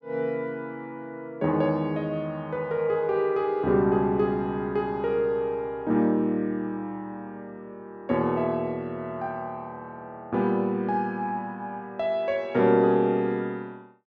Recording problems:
none

